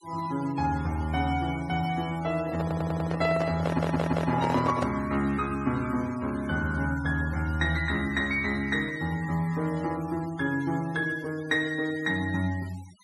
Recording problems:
denoising artefacts; signal-to-artefact ratio 18 dB
handling noise; from 2.5 to 5 s; peak +2 dB vs average level
stutter; at 2.5 s and at 3.5 s

